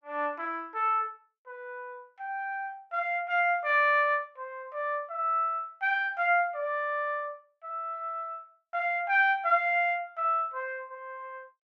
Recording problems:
none

